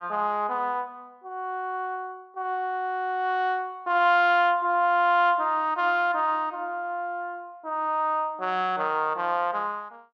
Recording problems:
none

